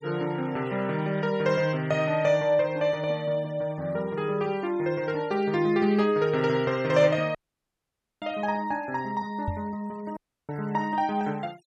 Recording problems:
denoising artefacts; signal-to-artefact ratio 25 dB
dropout; at 7.5 s for 1 s and at 10 s
knock on the microphone; at 9.5 s; peak -1 dB vs average level

